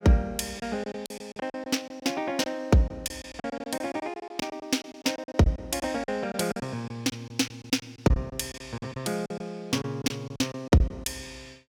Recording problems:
packet loss; 14% of the sound replaced, filled with silence

